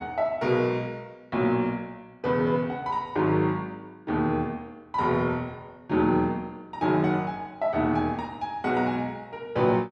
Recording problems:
none

